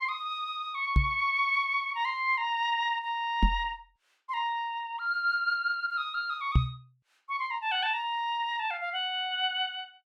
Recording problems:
microphone bump; at 1 s, at 3.5 s and at 6.5 s; peak +9 dB vs average level

